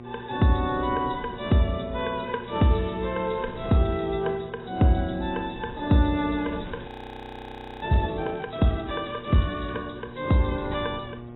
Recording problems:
lossy compression; AAC, log-spectral distance 8 dB, nothing above 3.8 kHz
hum; 60 Hz, harmonics up to 1.2 kHz, SNR 18 dB
wind on the microphone; below 360 Hz, SNR 20 dB
crackle; from 2.5 to 4 s and from 6.5 to 10 s; loose cable, SNR 27 dB
frozen audio; at 7 s for 1 s

